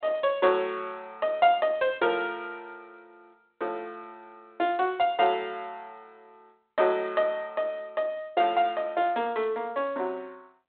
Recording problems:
phone line; 260 Hz to 3.7 kHz, G.726

